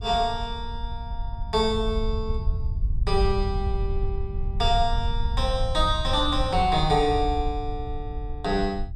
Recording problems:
rumble; below 72 Hz, SNR 4 dB

